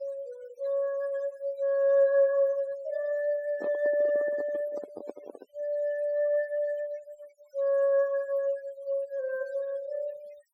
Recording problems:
noise reduction artefacts; signal-to-artefact ratio 23 dB
handling noise; from 3.5 to 5.5 s; peak -6 dB vs average level

